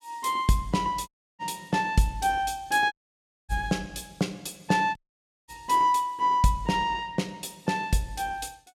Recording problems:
dropout; at 1 s, at 3 s for 0.5 s and at 5 s for 0.5 s

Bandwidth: 16 kHz